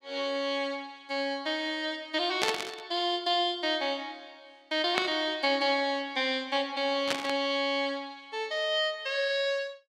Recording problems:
burst of static; at 2.5 s, at 5 s and at 7 s; peak +5 dB vs average level

